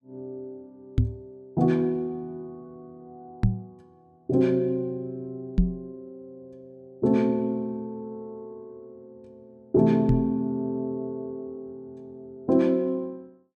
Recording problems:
knock on the microphone; 4 times, first at 1 s; peak +8 dB vs average level

